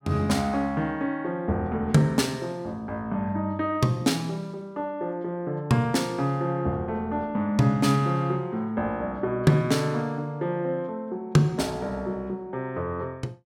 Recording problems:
none

